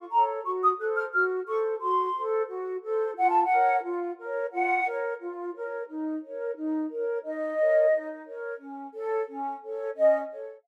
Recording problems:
none

